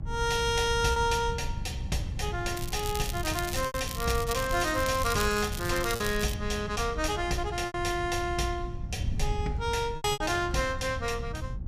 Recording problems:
hum; 60 Hz, harmonics up to 900 Hz, SNR 18 dB
wind on the microphone; below 110 Hz, SNR 8 dB
packet loss; 4% of the sound replaced, filled with repeated pitch periods
crackling; from 2.5 to 4 s and from 4 to 6.5 s; loose cable, SNR 9 dB

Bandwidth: 15 kHz